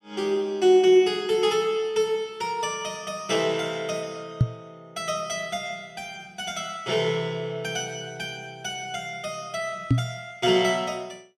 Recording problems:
microphone thump; at 4.5 s and at 10 s; peak +9 dB vs average level

